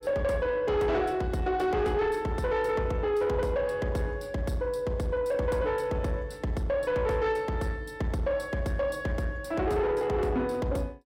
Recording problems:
distorted audio; soft clipping, signal-to-distortion ratio 10 dB

